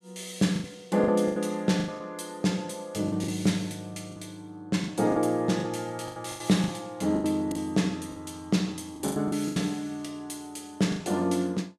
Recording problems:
packet loss; 11% of the sound replaced, filled with the last packet

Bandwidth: 13.5 kHz